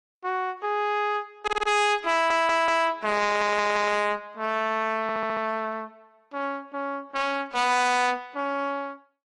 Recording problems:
lossy codec; AAC, log-spectral distance 2 dB, nothing above 10.1 kHz
distortion; hard clipping, uneven, signal-to-distortion ratio 9 dB
stutter; 4 times, first at 1.5 s

